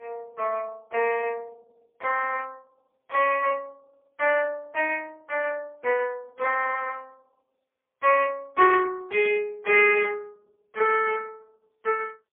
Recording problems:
telephone audio; 320 Hz to 3.1 kHz, AMR-NB, then MP3

